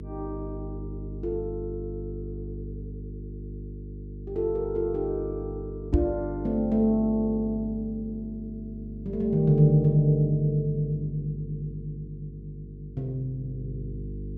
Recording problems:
hum; 50 Hz, harmonics up to 450 Hz, SNR 11 dB
microphone thump; at 6 s; peak +7 dB vs average level

